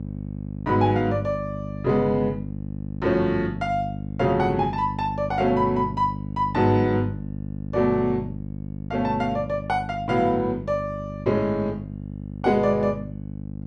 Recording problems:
hum; 50 Hz, harmonics up to 600 Hz, SNR 9 dB

